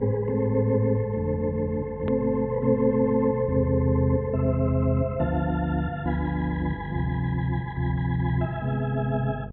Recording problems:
treble missing; nothing above 3.9 kHz
electrical hum; 50 Hz, harmonics up to 700 Hz, SNR 16 dB
edit click; at 2 s

